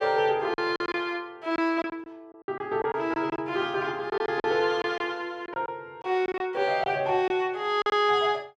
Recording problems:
lost packets; 9% of the sound replaced, filled with silence

